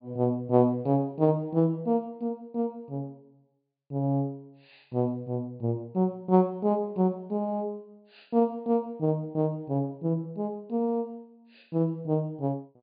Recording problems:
low-pass filter; nothing above 4.9 kHz

